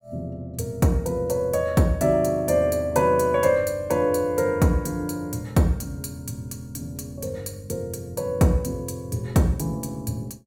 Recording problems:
none

